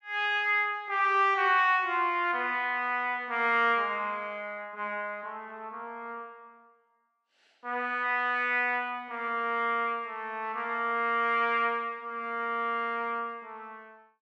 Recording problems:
none

